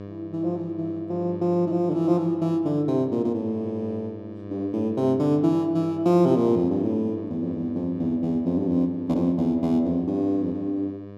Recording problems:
mains hum; 50 Hz, harmonics up to 1.3 kHz, SNR 16 dB

